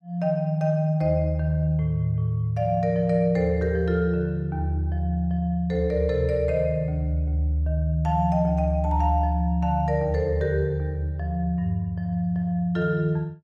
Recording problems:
none

